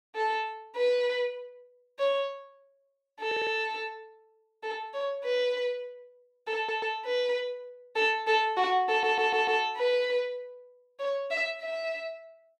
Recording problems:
stutter; at 3.5 s, at 6.5 s and at 9 s

